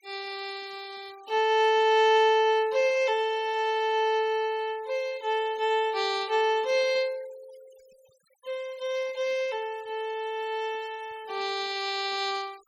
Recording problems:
noise reduction artefacts; signal-to-artefact ratio 24 dB

